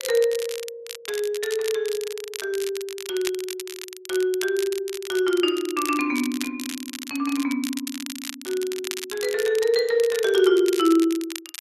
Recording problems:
crackling; vinyl, SNR 11 dB

